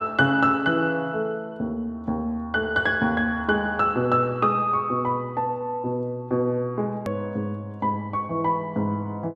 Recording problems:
click at an edit; at 7 s

